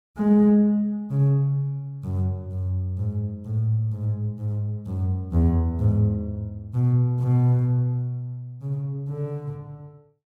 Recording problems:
none

